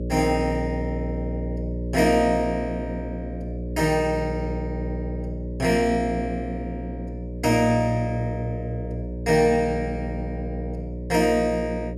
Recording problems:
electrical hum; 60 Hz, harmonics up to 600 Hz, SNR 7 dB

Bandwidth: 13.5 kHz